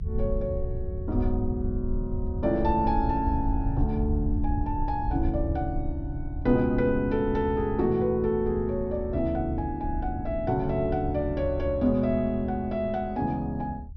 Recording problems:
treble missing; nothing above 6.1 kHz
rumble; below 80 Hz, SNR 6 dB

